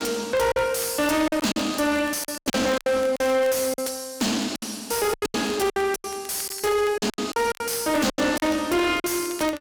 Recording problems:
distorted audio; soft clipping, signal-to-distortion ratio 7 dB
crackling; vinyl, SNR 22 dB
lost packets; 13% of the sound replaced, filled with silence

